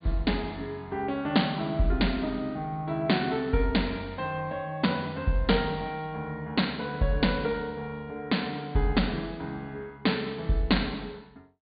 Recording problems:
treble missing; nothing above 4.7 kHz

